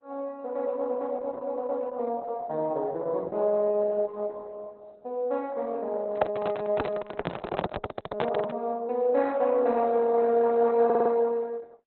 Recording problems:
lossy codec; Opus, log-spectral distance 3 dB, nothing above 4 kHz
microphone handling noise; from 6 to 8.5 s; peak +7 dB vs average level
audio stuttering; at 11 s

